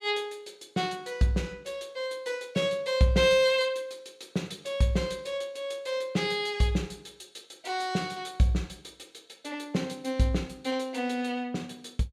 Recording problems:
none

